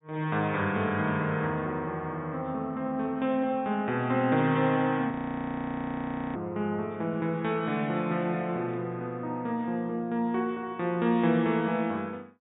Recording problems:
treble missing; nothing above 4 kHz
frozen audio; at 5 s for 1 s

